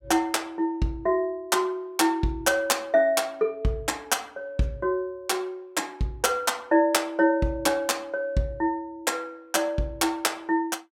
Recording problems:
none

